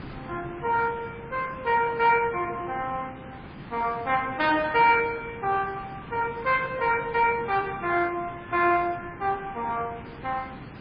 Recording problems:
codec artefacts; MP2, then MP3, log-spectral distance 7 dB, nothing above 4.4 kHz
background hiss; SNR 16 dB

